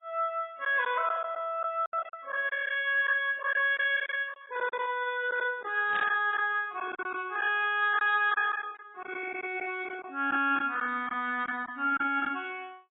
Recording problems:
lossy compression; AAC, log-spectral distance 2 dB, nothing above 3.5 kHz
packet loss; 7% of the sound replaced, filled with silence
static burst; at 6 s; peak -7 dB vs average level

